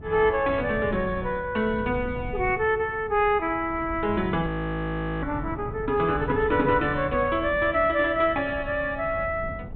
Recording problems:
treble missing; nothing above 4 kHz
wind noise; below 170 Hz, SNR 13 dB
audio freezing; at 4.5 s for 1 s

